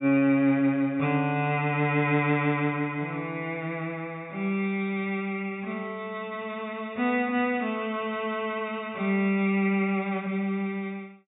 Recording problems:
treble cut off; nothing above 4 kHz

